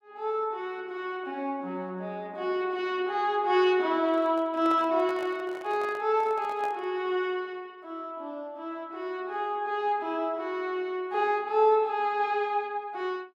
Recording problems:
handling noise; from 4 to 7 s; peak -8 dB vs average level

